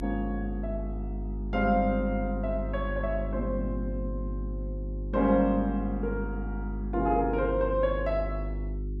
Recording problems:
electrical hum; 50 Hz, harmonics up to 400 Hz, SNR 5 dB

